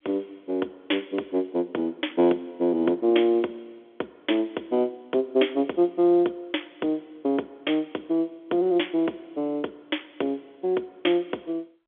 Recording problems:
telephone audio; 260 Hz to 3.4 kHz, G.711

